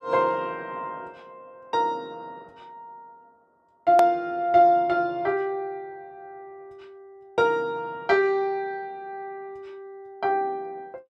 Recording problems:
edit click; at 4 s

